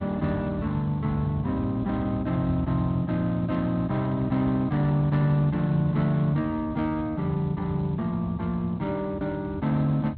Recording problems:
codec artefacts; Speex, log-spectral distance 2 dB
low-frequency rumble; below 120 Hz, SNR 12 dB

